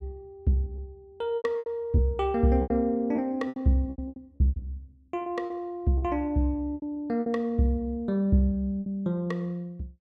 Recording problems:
packet loss; 11% of the sound replaced, filled with repeated pitch periods

